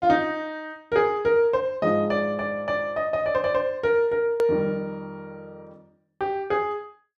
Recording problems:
hard cut with a click; at 4.5 s

